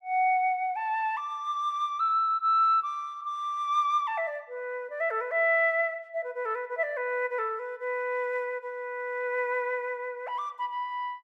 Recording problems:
none

